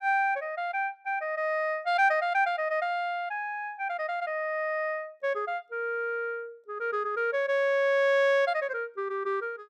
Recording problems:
none

